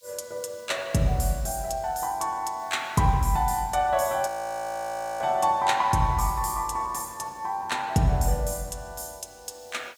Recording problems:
background hiss; SNR 28 dB
frozen audio; at 4.5 s for 1 s

